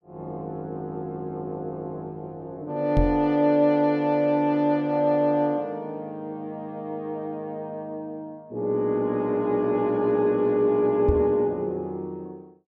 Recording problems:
microphone thump; at 3 s and at 11 s; peak +4 dB vs average level

